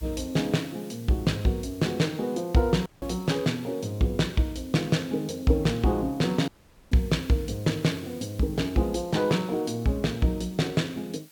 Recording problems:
hiss; slope +1 dB per octave, SNR 24 dB
dropout; at 3 s and at 6.5 s

